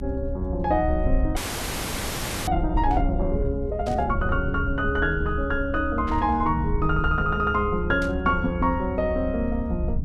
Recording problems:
mains hum; 50 Hz, harmonics up to 800 Hz, SNR 17 dB
rumble; below 70 Hz, SNR 5 dB
frozen audio; at 1.5 s for 1 s
static burst; 4 times, first at 3 s; peak -10 dB vs average level

